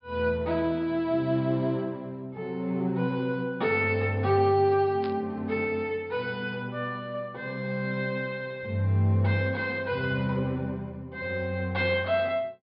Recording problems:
treble cut off; nothing above 5.5 kHz
burst of static; at 5 s; peak -10 dB vs average level

